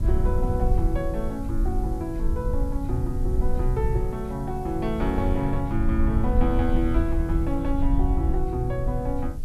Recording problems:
hiss; slope +2 dB per octave, SNR 27 dB
rumble; below 70 Hz, SNR 0 dB

